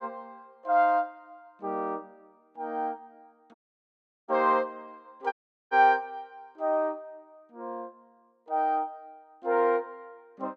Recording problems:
audio cutting out; at 3.5 s for 0.5 s and at 5.5 s

